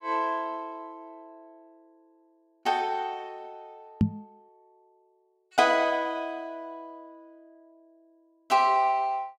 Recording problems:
microphone thump; at 4 s; peak +8 dB vs average level

